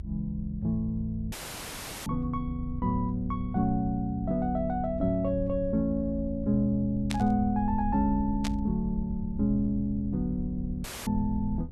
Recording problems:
low-frequency rumble; below 76 Hz, SNR 10 dB
audio cutting out; at 1.5 s for 0.5 s and at 11 s; filled with static
burst of static; at 7 s and at 8.5 s; peak -1 dB vs average level

